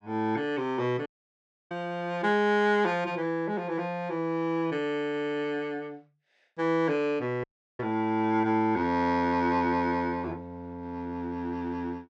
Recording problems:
audio cutting out; at 1 s for 0.5 s and at 7.5 s

